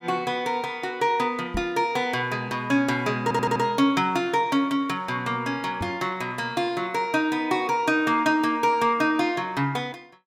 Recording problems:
knock on the microphone; at 1.5 s and at 6 s; peak -3 dB vs average level
stutter; at 3 s

